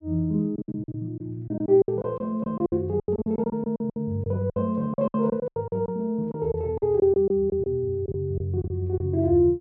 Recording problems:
packet loss; 15% of the sound replaced, filled with silence

